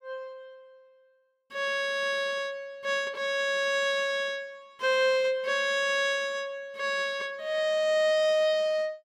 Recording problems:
none

